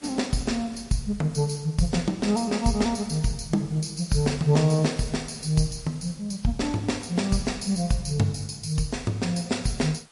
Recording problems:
codec artefacts; MP3, log-spectral distance 4 dB
background hiss; slope -1 dB per octave, SNR 27 dB

